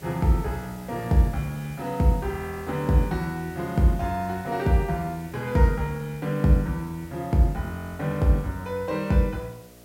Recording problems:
hum; 60 Hz, harmonics up to 720 Hz, SNR 27 dB
background hiss; slope 0 dB per octave, SNR 24 dB

